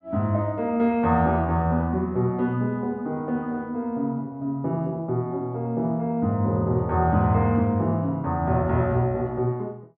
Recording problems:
low-pass filter; nothing above 8 kHz

